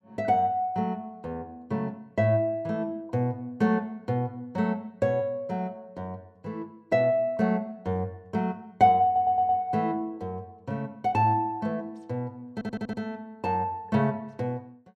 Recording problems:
audio stuttering; at 9 s and at 13 s

